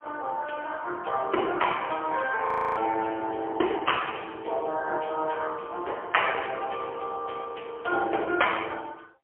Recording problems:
phone line; 300 Hz to 3.2 kHz, AMR-NB, then MP3
frozen audio; at 2.5 s

